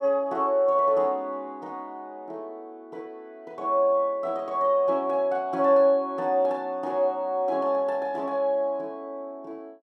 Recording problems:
none

